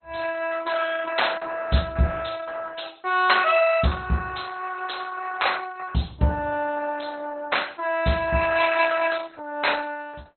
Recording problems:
low-pass filter; nothing above 4.1 kHz
codec artefacts; Opus, log-spectral distance 5 dB

